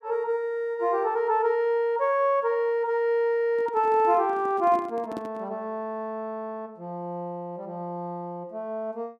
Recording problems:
microphone handling noise; from 3.5 to 5.5 s; peak -5 dB vs average level

